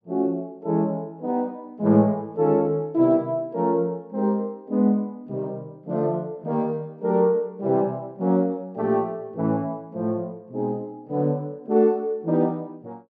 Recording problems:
none

